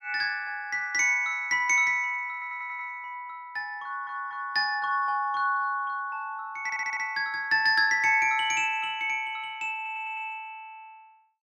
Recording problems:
stutter; 4 times, first at 2.5 s

